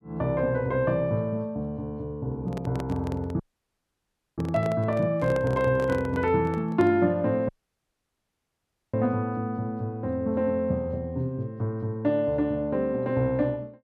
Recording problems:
microphone handling noise; from 2.5 to 7 s; peak -6 dB vs average level
dropout; at 3.5 s for 1 s and at 7.5 s for 1.5 s

